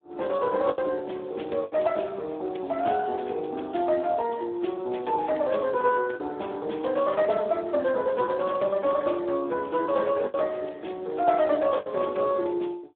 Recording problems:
phone line; 240 Hz to 3.6 kHz, Speex
lost packets; 3% of the sound replaced, filled with the last packet

